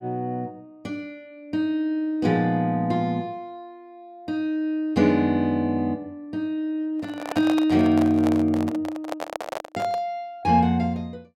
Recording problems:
handling noise; from 7 to 10 s; peak -2 dB vs average level

